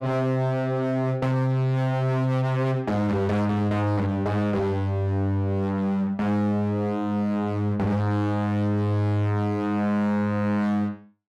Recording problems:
distorted audio; hard clipping, uneven, signal-to-distortion ratio 7 dB

